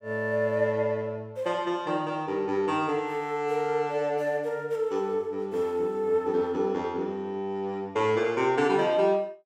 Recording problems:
none

